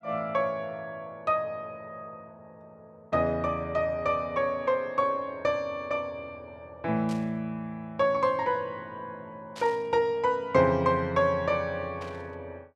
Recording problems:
static burst; at 7 s, at 9.5 s and at 12 s; peak -11 dB vs average level

